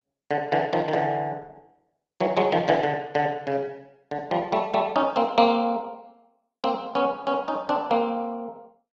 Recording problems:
lossy compression; Opus, log-spectral distance 3 dB

